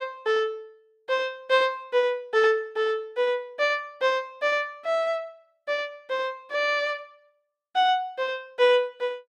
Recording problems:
none

